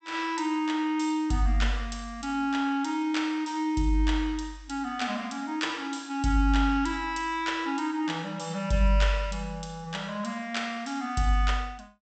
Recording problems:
treble cut off; nothing above 8 kHz

